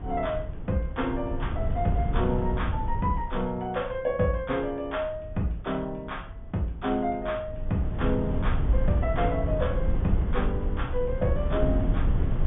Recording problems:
treble missing; nothing above 3.6 kHz
wind noise; below 100 Hz, SNR 1 dB

